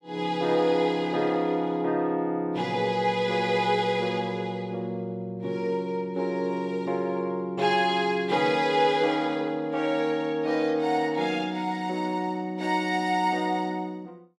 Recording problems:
none

